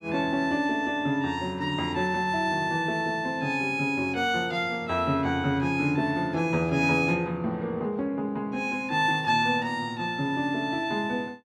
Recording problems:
none

